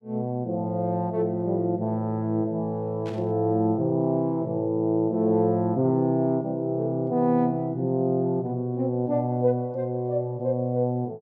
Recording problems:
static burst; at 3 s; peak -15 dB vs average level

